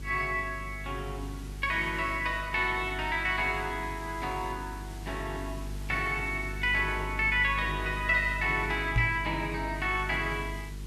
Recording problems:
electrical hum; 50 Hz, harmonics up to 450 Hz, SNR 11 dB
background hiss; slope -1 dB per octave, SNR 19 dB
microphone bump; at 9 s; peak +4 dB vs average level

